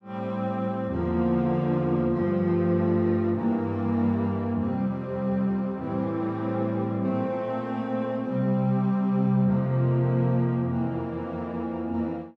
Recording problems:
none

